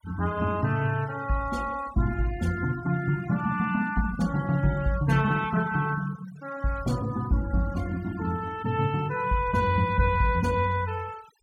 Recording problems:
noise reduction artefacts; signal-to-artefact ratio 20 dB

